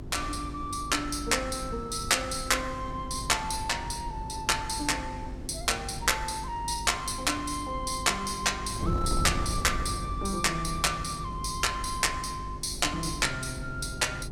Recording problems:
hum; 50 Hz, harmonics up to 400 Hz, SNR 13 dB
wind noise; below 150 Hz, SNR 11 dB

